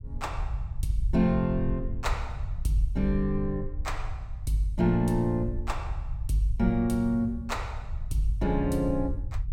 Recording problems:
low-frequency rumble; below 78 Hz, SNR 7 dB

